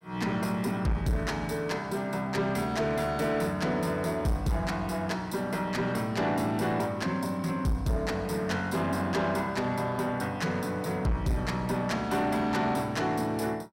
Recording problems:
distortion; soft clipping, signal-to-distortion ratio 11 dB

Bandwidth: 16 kHz